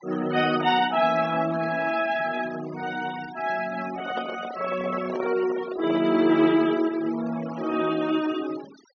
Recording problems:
low-pass filter; nothing above 6.2 kHz
noise reduction artefacts; signal-to-artefact ratio 16 dB
microphone handling noise; from 4 to 6 s; peak -4 dB vs average level

